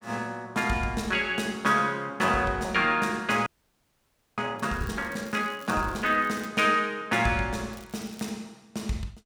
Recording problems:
audio freezing; at 3.5 s for 1 s
crackle; from 4.5 to 6.5 s and at 7.5 s; loose cable, SNR 24 dB

